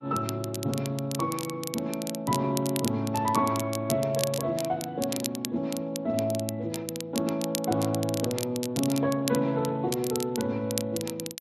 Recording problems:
codec artefacts; AAC, then Speex, log-spectral distance 2 dB
crackle; vinyl, SNR 8 dB

